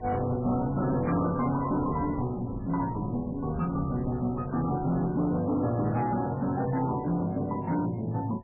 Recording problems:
lossy codec; MP3, log-spectral distance 3 dB, nothing above 2.4 kHz
distorted audio; hard clipping, signal-to-distortion ratio 11 dB
wind noise; below 270 Hz, SNR 15 dB

